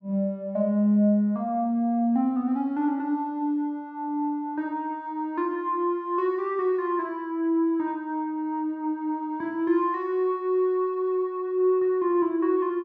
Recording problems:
none

